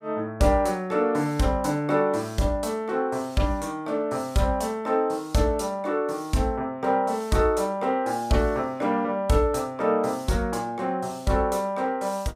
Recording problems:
none

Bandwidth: 15.5 kHz